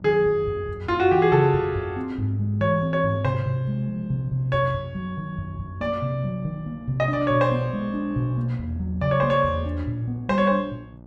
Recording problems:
hum; 60 Hz, harmonics up to 960 Hz, SNR 23 dB

